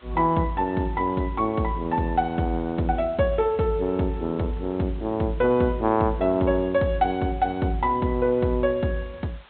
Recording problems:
treble cut off; nothing above 4 kHz
background hiss; SNR 27 dB

